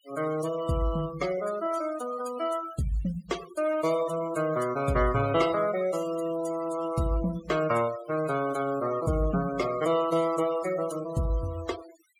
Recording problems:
denoising artefacts; signal-to-artefact ratio 14 dB

